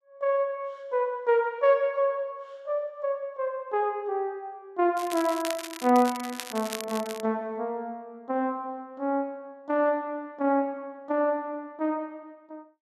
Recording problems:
crackling; from 5 to 7 s; loose cable, SNR 10 dB

